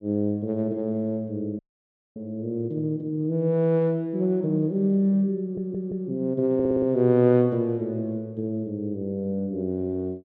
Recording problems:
audio cutting out; at 1.5 s for 0.5 s
audio stuttering; at 5.5 s and at 6.5 s

